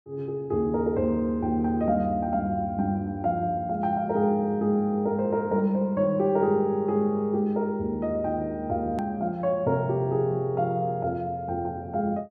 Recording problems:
edit click; at 9 s

